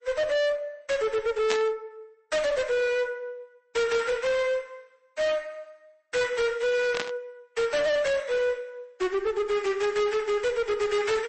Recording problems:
lossy codec; MP3, log-spectral distance 2 dB, nothing above 8.2 kHz
distortion; hard clipping, uneven, signal-to-distortion ratio 5 dB
burst of static; at 1.5 s and at 7 s; peak 0 dB vs average level

